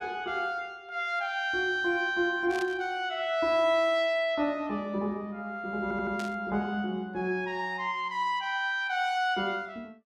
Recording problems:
static burst; at 2.5 s and at 6 s; peak -9 dB vs average level
audio stuttering; at 6 s

